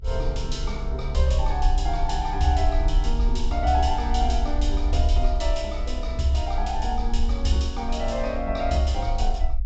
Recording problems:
low-pass filter; nothing above 8 kHz
low-frequency rumble; below 56 Hz, SNR 1 dB

